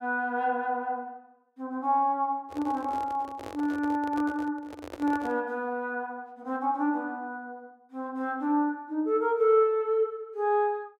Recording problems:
handling noise; from 2.5 to 5.5 s; peak -7 dB vs average level

